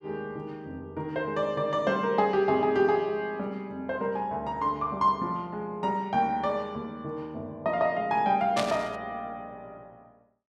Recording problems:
burst of static; at 8.5 s; peak +1 dB vs average level

